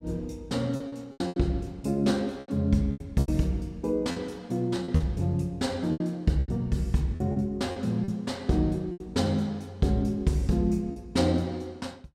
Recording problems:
packet loss; 9% of the sound replaced, filled with repeated pitch periods

